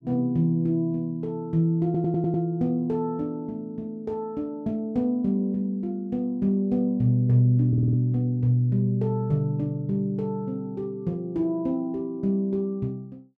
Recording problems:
stutter; at 2 s and at 7.5 s

